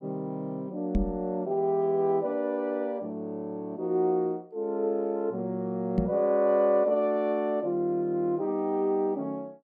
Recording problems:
microphone thump; at 1 s and at 6 s; peak +5 dB vs average level

